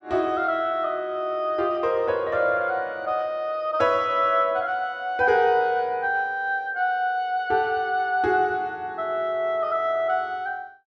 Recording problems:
none

